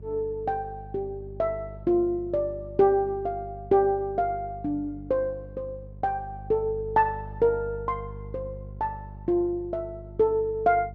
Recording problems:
electrical hum; 50 Hz, harmonics up to 400 Hz, SNR 15 dB

